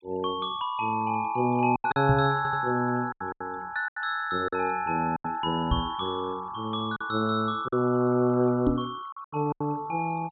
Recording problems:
treble missing; nothing above 4 kHz
noise reduction artefacts; signal-to-artefact ratio 24 dB
packet loss; 8% of the sound replaced, filled with silence
microphone thump; at 2 s, at 5.5 s and at 8.5 s; peak +5 dB vs average level
stutter; at 2.5 s

